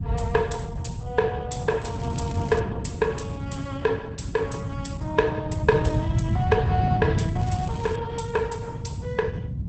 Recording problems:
codec artefacts; Opus, log-spectral distance 3 dB, nothing above 8 kHz
low-frequency rumble; below 140 Hz, SNR 0 dB
wind noise; below 230 Hz, SNR 10 dB
crackle; at 2 s and at 7.5 s; loose cable, SNR 20 dB

